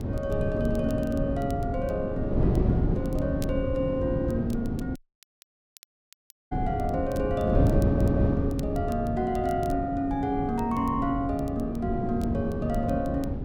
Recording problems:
wind on the microphone; below 260 Hz, SNR 0 dB
crackling; vinyl, SNR 24 dB
dropout; at 5 s for 1.5 s
audio stuttering; at 8 s

